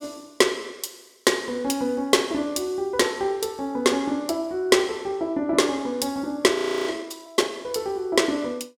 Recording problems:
frozen audio; at 6.5 s

